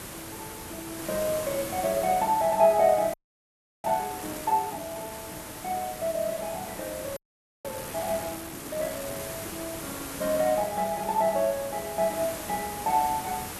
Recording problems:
background hiss; slope -4 dB per octave, SNR 9 dB
audio freezing; at 3 s for 0.5 s and at 7 s

